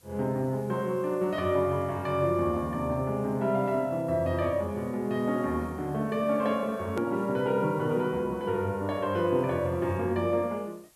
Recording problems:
hiss; slope -1 dB per octave, SNR 29 dB
edit click; at 7 s

